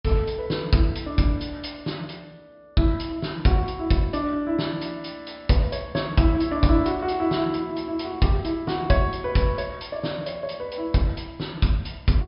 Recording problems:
treble missing; nothing above 5.5 kHz

